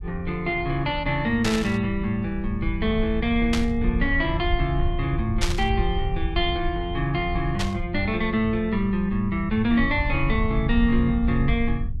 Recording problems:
rumble; below 76 Hz, SNR 6 dB
static burst; 4 times, first at 1.5 s; peak +1 dB vs average level

